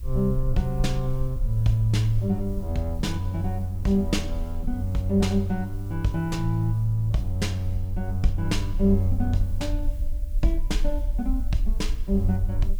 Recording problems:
hiss; slope 0 dB per octave, SNR 28 dB
low-frequency rumble; below 48 Hz, SNR 6 dB

